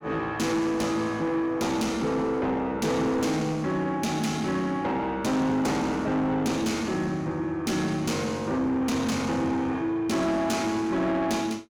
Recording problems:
distorted audio; soft clipping, signal-to-distortion ratio 10 dB

